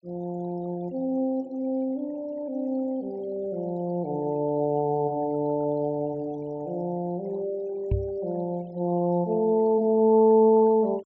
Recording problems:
low-pass filter; nothing above 8 kHz
denoising artefacts; signal-to-artefact ratio 27 dB
microphone bump; at 8 s; peak +2 dB vs average level

